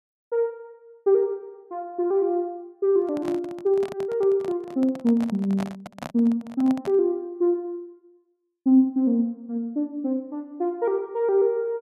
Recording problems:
microphone handling noise; from 3 to 7 s; peak -6 dB vs average level

